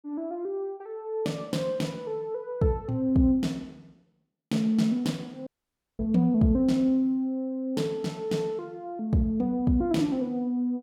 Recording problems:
audio cutting out; at 5.5 s for 0.5 s

